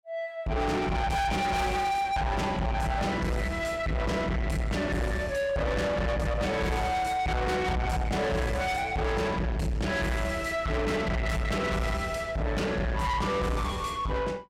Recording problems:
distortion; soft clipping, signal-to-distortion ratio 6 dB

